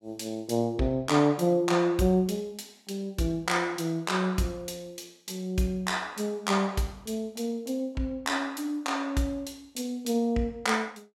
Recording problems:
none

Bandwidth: 16 kHz